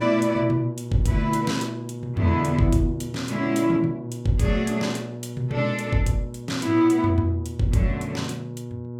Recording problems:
hum; 60 Hz, harmonics up to 960 Hz, SNR 11 dB

